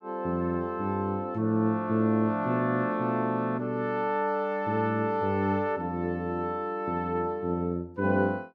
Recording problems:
none

